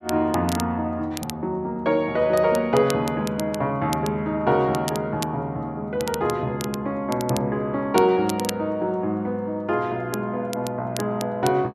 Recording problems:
crackle; vinyl, SNR 14 dB

